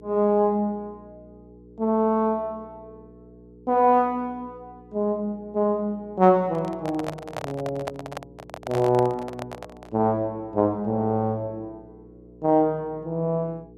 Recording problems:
electrical hum; 60 Hz, harmonics up to 480 Hz, SNR 24 dB
microphone handling noise; from 6.5 to 10 s; peak -3 dB vs average level

